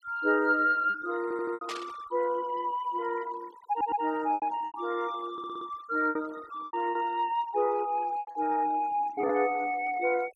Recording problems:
noise reduction artefacts; signal-to-artefact ratio 22 dB
lost packets; 7% of the sound replaced, filled with repeated pitch periods
audio stuttering; at 1 s, at 3.5 s and at 5.5 s
static burst; at 1.5 s; peak -5 dB vs average level

